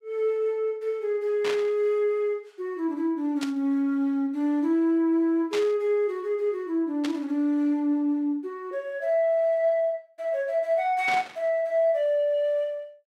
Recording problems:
burst of static; 5 times, first at 1.5 s; peak -4 dB vs average level

